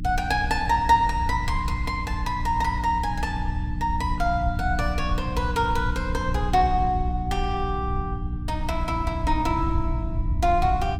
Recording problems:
hum; 60 Hz, harmonics up to 300 Hz, SNR 7 dB
rumble; below 88 Hz, SNR 6 dB

